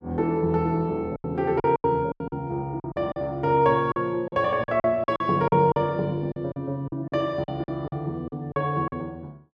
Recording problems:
packet loss; 12% of the sound replaced, filled with silence

